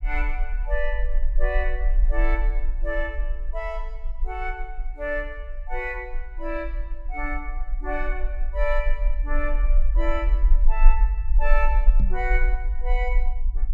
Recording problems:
rumble; below 40 Hz, strongest tone 20 Hz, SNR -5 dB
microphone thump; at 12 s; peak +4 dB vs average level

